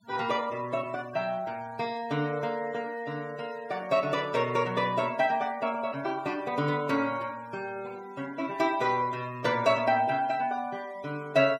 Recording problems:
noise reduction artefacts; signal-to-artefact ratio 21 dB

